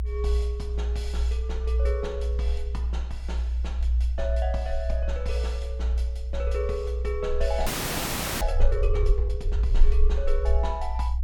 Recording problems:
rumble; below 62 Hz, strongest tone 60 Hz, SNR -6 dB
audio freezing; at 7.5 s for 1 s

